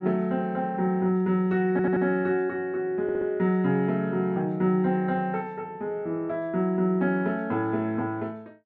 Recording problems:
audio stuttering; at 1.5 s and at 3 s

